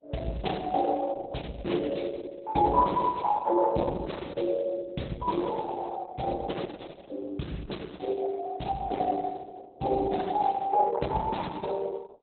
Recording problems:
codec artefacts; Opus, then Opus, log-spectral distance 4 dB, nothing above 4.1 kHz

